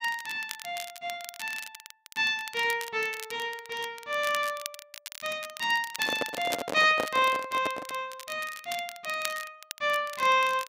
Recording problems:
crackling; vinyl, SNR 13 dB
handling noise; from 6 to 8 s; peak +2 dB vs average level

